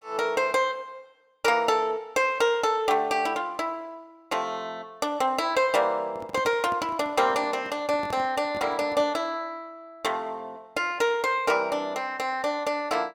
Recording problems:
microphone handling noise; from 6 to 9 s; peak -9 dB vs average level

